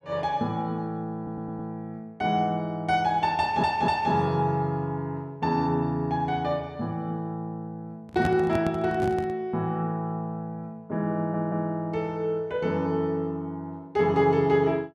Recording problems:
stutter; at 1 s, at 3.5 s and at 11 s
handling noise; from 8 to 9.5 s; peak +2 dB vs average level

